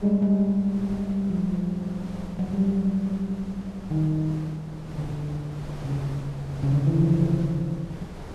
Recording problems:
wind noise; below 550 Hz, SNR 14 dB

